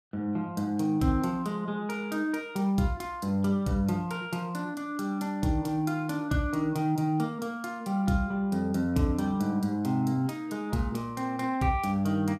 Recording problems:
none

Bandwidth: 15 kHz